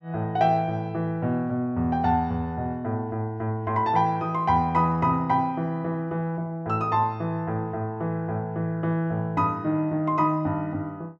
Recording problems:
none

